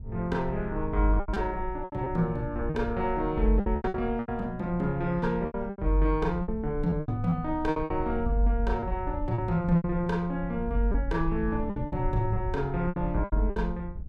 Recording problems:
rumble; below 76 Hz, SNR 10 dB
lost packets; 11% of the sound replaced, filled with repeated pitch periods

